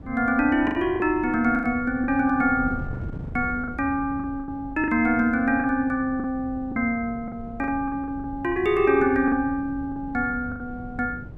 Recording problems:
wind noise; below 190 Hz, SNR 15 dB
packet loss; 10% of the sound replaced, filled with the last packet

